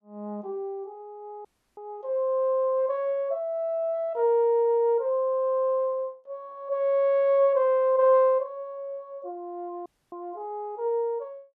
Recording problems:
dropout; at 1.5 s and at 10 s

